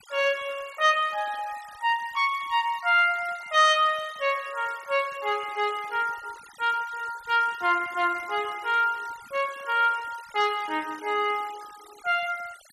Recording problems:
noise reduction artefacts; signal-to-artefact ratio 20 dB

